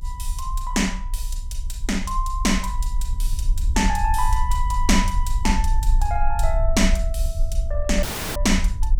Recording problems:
rumble; below 50 Hz, strongest tone 30 Hz, SNR 1 dB
dropout; at 8 s

